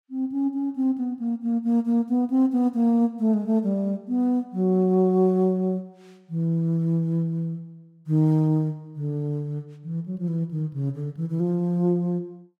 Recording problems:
none

